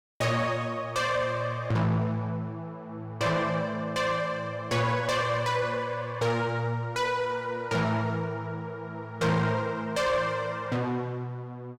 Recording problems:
distorted audio; soft clipping, signal-to-distortion ratio 11 dB

